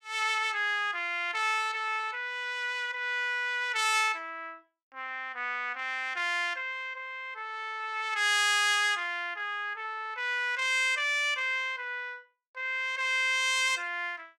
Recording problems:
none

